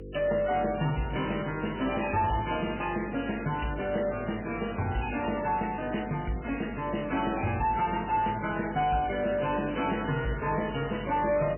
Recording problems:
lossy codec; MP3, log-spectral distance 7 dB, nothing above 3 kHz
distortion; soft clipping, signal-to-distortion ratio 11 dB
electrical hum; 50 Hz, harmonics up to 500 Hz, SNR 13 dB

